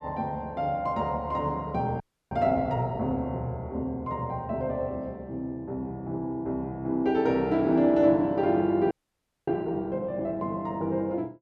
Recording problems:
audio freezing; at 2 s and at 9 s for 0.5 s

